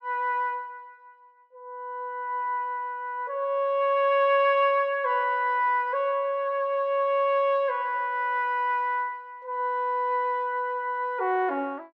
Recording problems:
none

